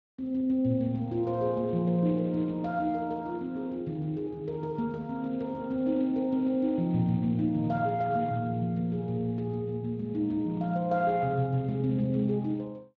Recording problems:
lossy compression; Speex, log-spectral distance 2 dB

